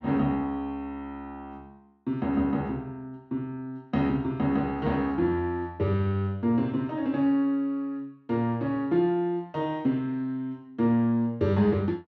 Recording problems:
none

